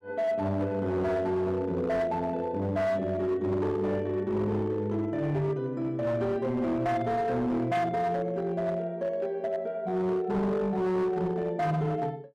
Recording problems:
distortion; hard clipping, signal-to-distortion ratio 11 dB

